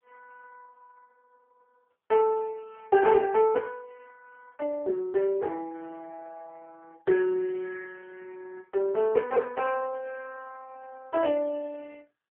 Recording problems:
phone line; 320 Hz to 2.2 kHz, AMR-NB

